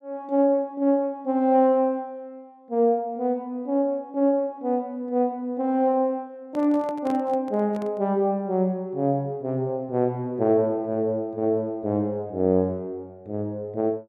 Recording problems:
handling noise; from 6.5 to 8 s; peak -9 dB vs average level

